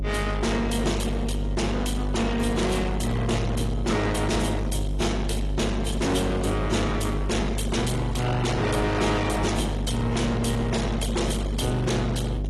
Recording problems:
lossy codec; AAC, log-spectral distance 4 dB, nothing above 11.6 kHz
distorted audio; soft clipping, signal-to-distortion ratio 7 dB
hum; 50 Hz, harmonics up to 550 Hz, SNR 3 dB

